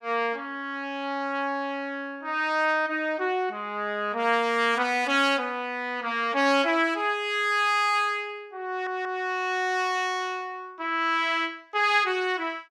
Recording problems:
audio stuttering; at 8.5 s

